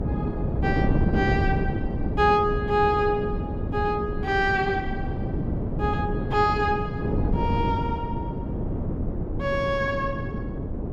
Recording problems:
hum; 60 Hz, harmonics up to 600 Hz, SNR 21 dB
wind noise; below 280 Hz, SNR 2 dB

